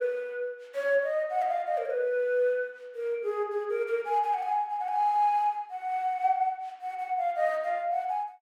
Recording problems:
none

